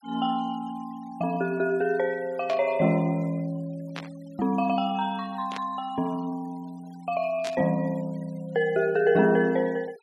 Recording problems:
noise reduction artefacts; signal-to-artefact ratio 27 dB
static burst; 4 times, first at 2.5 s; peak -5 dB vs average level

